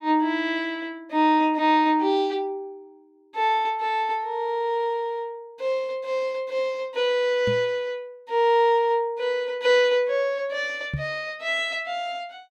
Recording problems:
knock on the microphone; at 7.5 s and at 11 s; peak -1 dB vs average level

